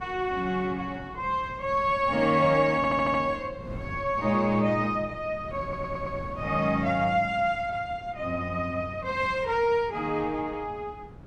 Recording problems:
wind noise; below 260 Hz, SNR 17 dB
audio stuttering; at 3 s and at 5.5 s

